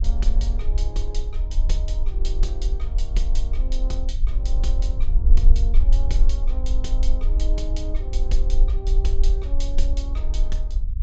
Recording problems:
low-pass filter; nothing above 8 kHz
rumble; below 44 Hz, strongest tone 20 Hz, SNR -12 dB

